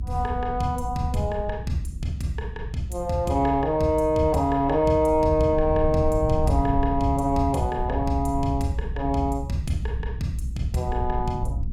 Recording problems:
low-frequency rumble; below 94 Hz, SNR 7 dB

